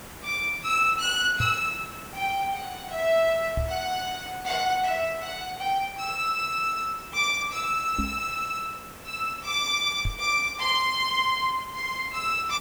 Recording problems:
hiss; slope -4 dB per octave, SNR 17 dB
knock on the microphone; 4 times, first at 1.5 s; peak +1 dB vs average level

